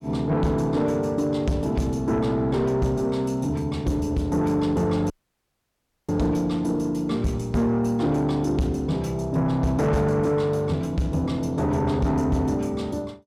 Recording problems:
distortion; soft clipping, signal-to-distortion ratio 11 dB
audio cutting out; at 5 s for 1 s

